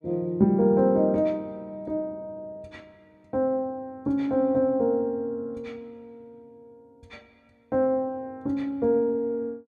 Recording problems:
none

